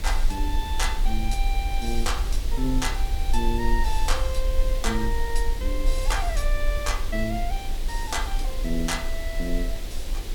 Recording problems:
background hiss; SNR 8 dB
low-frequency rumble; below 42 Hz, strongest tone 26 Hz, SNR -1 dB

